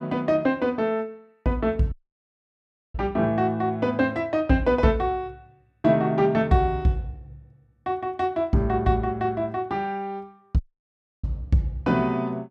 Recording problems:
audio cutting out; at 2 s for 1 s and at 11 s for 0.5 s

